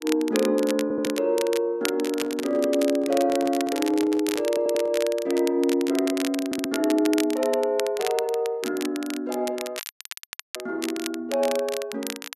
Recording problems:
crackle; vinyl, SNR 11 dB
audio stuttering; at 1 s, at 4.5 s and at 6.5 s
handling noise; from 2 to 5 s; peak -10 dB vs average level
audio cutting out; at 10 s for 1 s

